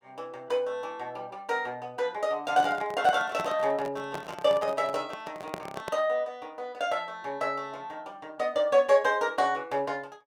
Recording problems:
microphone handling noise; from 2.5 to 6 s; peak -3 dB vs average level

